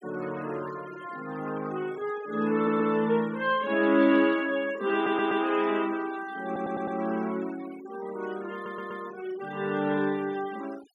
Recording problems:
noise reduction artefacts; signal-to-artefact ratio 20 dB
stutter; 4 times, first at 2.5 s

